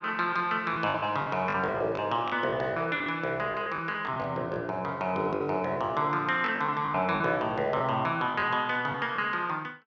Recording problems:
lost packets; 9% of the sound replaced, filled with the last packet

